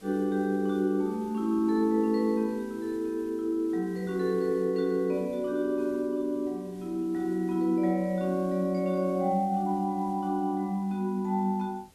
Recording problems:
hiss; SNR 27 dB

